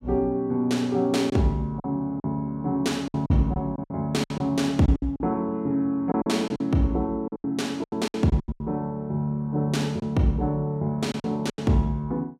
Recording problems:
packet loss; 10% of the sound replaced, filled with silence

